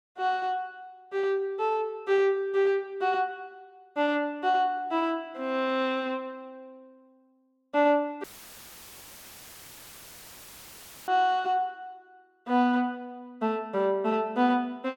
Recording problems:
audio cutting out; at 8 s for 3 s; filled with static

